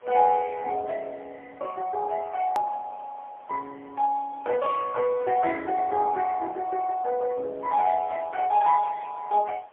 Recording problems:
phone line; 340 Hz to 3.4 kHz, AMR-NB, then MP3
background hiss; SNR 30 dB
click at an edit; at 2.5 s

